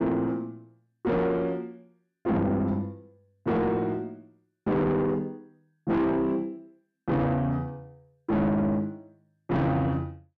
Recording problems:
distorted audio; soft clipping, signal-to-distortion ratio 7 dB

